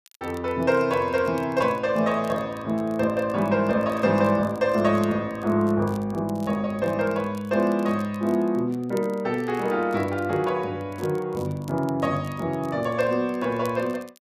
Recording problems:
crackle; vinyl, SNR 27 dB

